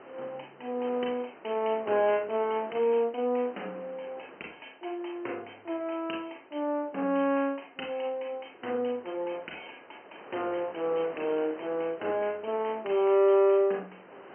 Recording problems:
telephone audio; 280 Hz to 3.1 kHz, G.711
wind noise; below 1.4 kHz, SNR 19 dB

